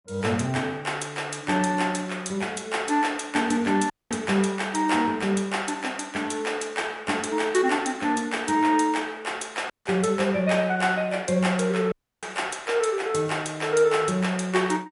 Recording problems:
codec artefacts; MP3, log-spectral distance 4 dB, nothing above 11 kHz
audio cutting out; at 4 s, at 9.5 s and at 12 s

